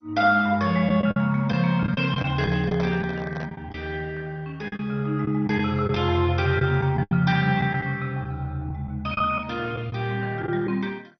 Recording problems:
lossy codec; MP2, log-spectral distance 3 dB, nothing above 5.2 kHz
lost packets; 7% of the sound replaced, filled with the last packet
handling noise; from 2 to 3.5 s; peak -4 dB vs average level

